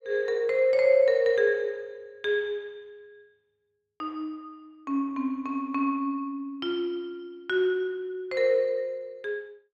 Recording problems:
none

